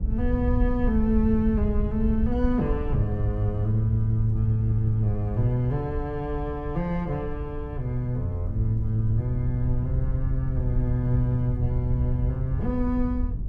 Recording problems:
wind on the microphone; below 82 Hz, SNR 4 dB

